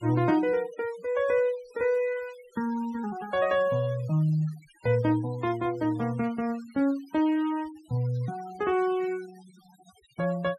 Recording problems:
noise reduction artefacts; signal-to-artefact ratio 21 dB

